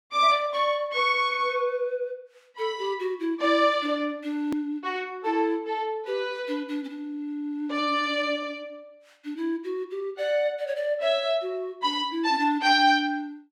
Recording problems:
click at an edit; at 4.5 s

